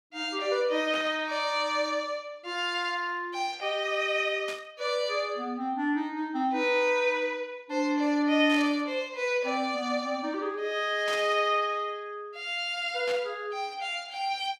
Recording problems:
burst of static; 5 times, first at 1 s; peak -6 dB vs average level

